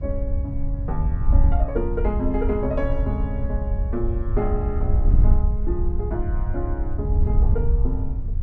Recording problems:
wind on the microphone; below 72 Hz, SNR -5 dB

